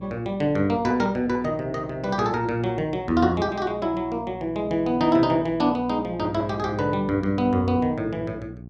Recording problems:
hum; 60 Hz, harmonics up to 480 Hz, SNR 17 dB

